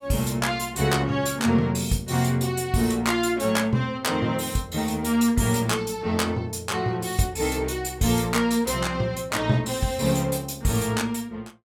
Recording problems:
none

